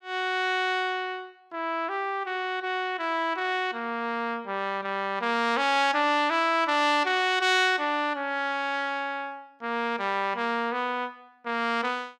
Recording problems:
none

